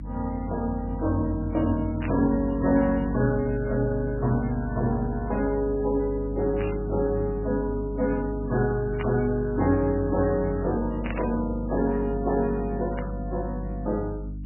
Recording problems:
codec artefacts; MP3, log-spectral distance 2 dB, nothing above 2.5 kHz
hum; 50 Hz, harmonics up to 300 Hz, SNR 8 dB
burst of static; 5 times, first at 2 s; peak -6 dB vs average level

